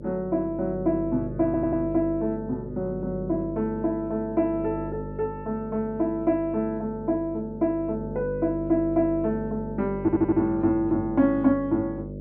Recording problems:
mains hum; 50 Hz, harmonics up to 600 Hz, SNR 10 dB
audio stuttering; at 1.5 s and at 10 s

